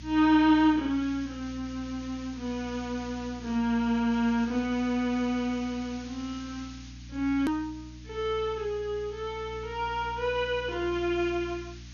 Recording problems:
lossy compression; MP2, log-spectral distance 6 dB, nothing above 13.1 kHz
hum; 60 Hz, harmonics up to 300 Hz, SNR 17 dB
hiss; slope +3 dB per octave, SNR 21 dB
hard cut with a click; at 7.5 s

